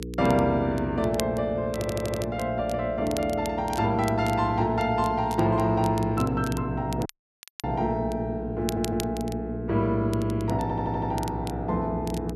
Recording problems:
hum; 60 Hz, harmonics up to 480 Hz, SNR 9 dB
crackle; vinyl, SNR 16 dB
stutter; at 2 s, at 8.5 s and at 11 s
dropout; at 7 s for 0.5 s

